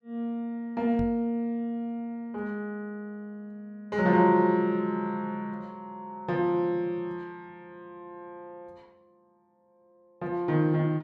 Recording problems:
knock on the microphone; at 1 s; peak -3 dB vs average level

